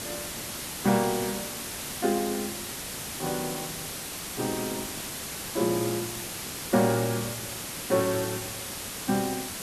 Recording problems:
background hiss; slope -1 dB per octave, SNR 4 dB

